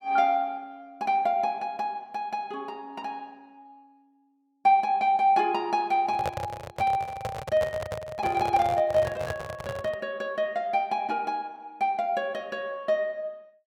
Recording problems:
handling noise; from 6 to 10 s; peak 0 dB vs average level

